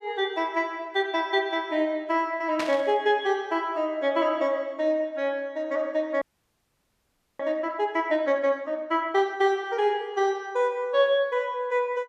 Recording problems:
burst of static; at 2.5 s; peak -2 dB vs average level
frozen audio; at 6 s for 1 s

